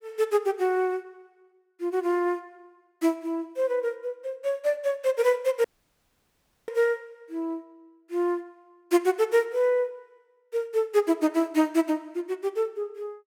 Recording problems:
audio cutting out; at 5.5 s for 1 s

